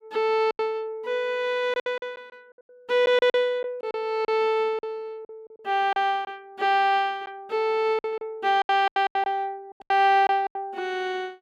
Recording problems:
packet loss; 11% of the sound replaced, filled with silence

